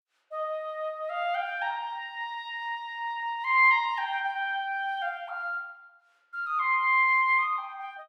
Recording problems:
none

